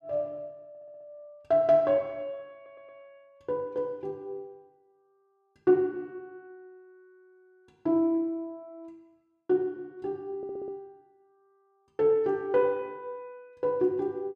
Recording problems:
stutter; at 0.5 s, at 2.5 s and at 10 s

